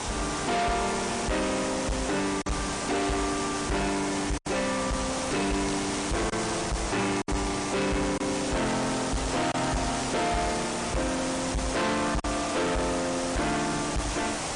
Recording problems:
lossy compression; MP3, log-spectral distance 13 dB
distortion; soft clipping, signal-to-distortion ratio 6 dB
background hiss; slope -3 dB per octave, SNR 3 dB
lost packets; 1.9% of the sound replaced, filled with silence
crackling; at 3 s, from 5.5 to 6.5 s and from 8.5 to 11 s; loose cable, SNR 13 dB

